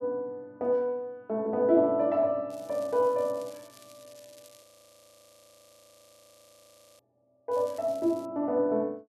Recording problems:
crackle; from 2.5 to 4.5 s and at 7.5 s; loose cable, SNR 27 dB
frozen audio; at 4.5 s for 2.5 s

